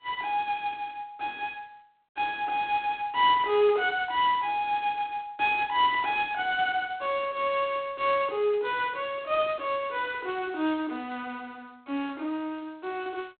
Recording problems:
phone line; 260 Hz to 3.7 kHz, G.726

